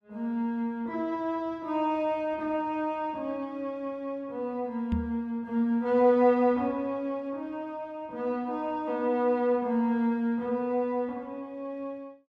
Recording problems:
knock on the microphone; at 5 s; peak +2 dB vs average level

